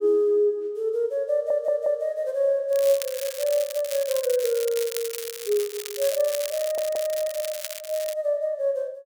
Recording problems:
stutter; at 1.5 s and at 6.5 s
crackling; from 2.5 to 8 s; loose cable, SNR 9 dB

